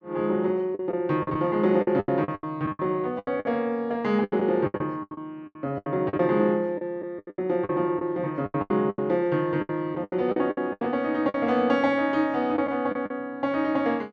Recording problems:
packet loss; 15% of the sound replaced, filled with the last packet

